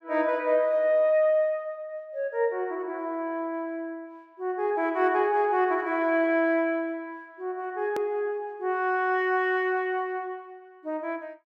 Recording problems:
edit click; at 8 s

